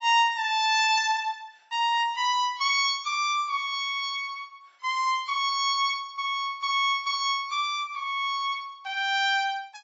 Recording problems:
codec artefacts; AAC, log-spectral distance 2 dB, nothing above 6.2 kHz

